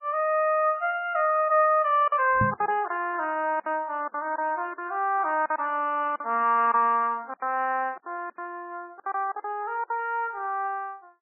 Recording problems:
lossy codec; MP3, log-spectral distance 2 dB, nothing above 2.5 kHz
packet loss; 8% of the sound replaced, filled with silence
microphone bump; at 2.5 s; peak +1 dB vs average level

